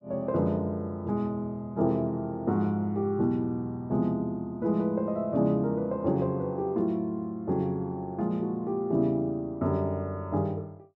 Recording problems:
none

